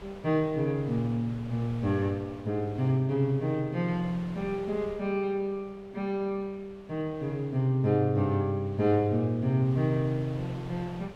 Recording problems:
wind noise; below 1.1 kHz, SNR 20 dB

